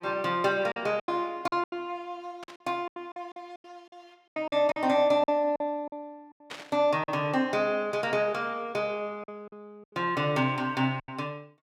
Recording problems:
lost packets; 10% of the sound replaced, filled with silence
burst of static; at 2.5 s and at 6.5 s; peak -7 dB vs average level

